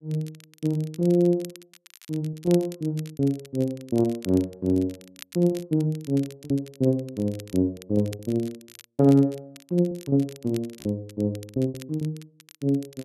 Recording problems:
crackling; vinyl, SNR 22 dB
packet loss; 7% of the sound replaced, filled with repeated pitch periods

